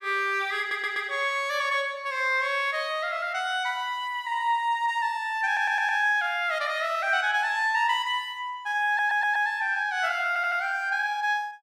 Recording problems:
stutter; 4 times, first at 0.5 s

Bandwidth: 14 kHz